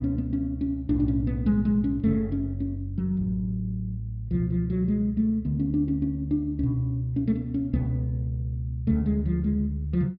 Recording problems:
treble missing; nothing above 5.5 kHz

